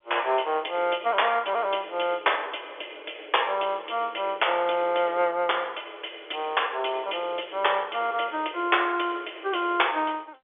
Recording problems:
phone line; 300 Hz to 3.5 kHz, G.711

